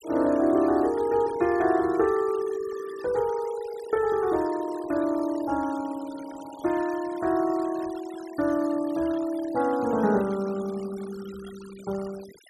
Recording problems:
noise reduction artefacts; signal-to-artefact ratio 20 dB

